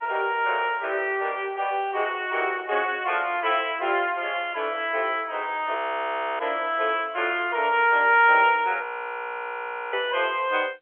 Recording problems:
phone line; 300 Hz to 3.3 kHz, G.711
frozen audio; at 6 s for 0.5 s and at 9 s for 1 s

